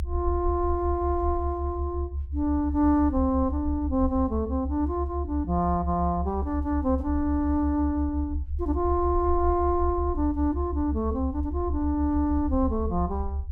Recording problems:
rumble; below 74 Hz, strongest tone 68 Hz, SNR 5 dB

